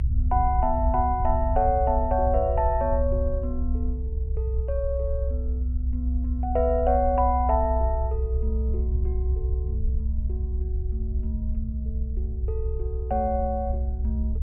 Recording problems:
low-pass filter; nothing above 3 kHz
rumble; below 66 Hz, strongest tone 64 Hz, SNR 1 dB

